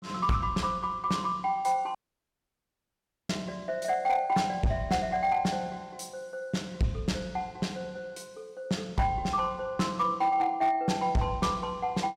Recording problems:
distorted audio; hard clipping, uneven, signal-to-distortion ratio 11 dB
dropout; at 2 s for 1.5 s

